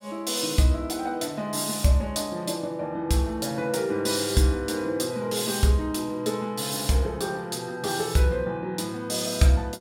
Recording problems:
none

